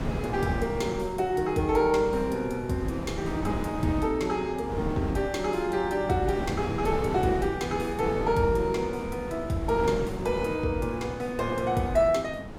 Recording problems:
wind on the microphone; below 430 Hz, SNR 8 dB

